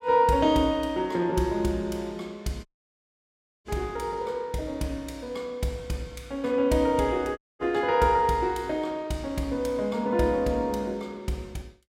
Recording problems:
dropout; at 2.5 s for 1 s and at 7.5 s

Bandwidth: 16 kHz